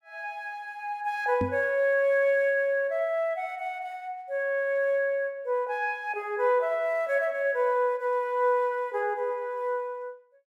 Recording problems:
microphone bump; at 1.5 s; peak 0 dB vs average level

